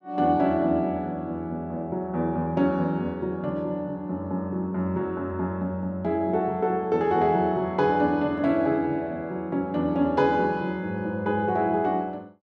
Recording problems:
none

